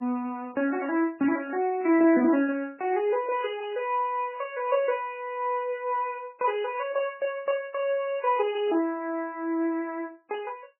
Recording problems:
lossy codec; MP3, log-spectral distance 2 dB, nothing above 2.5 kHz

